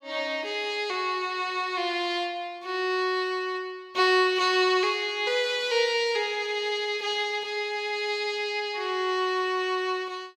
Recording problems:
none

